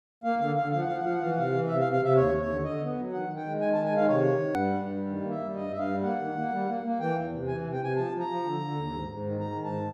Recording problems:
edit click; at 4.5 s

